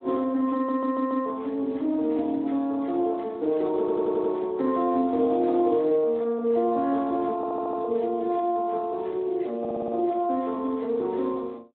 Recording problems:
phone line; 220 Hz to 2 kHz, Speex
audio stuttering; 4 times, first at 0.5 s

